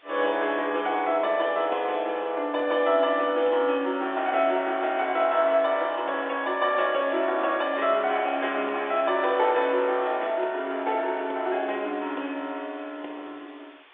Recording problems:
phone line; 300 Hz to 3.6 kHz, G.711
background hiss; SNR 28 dB

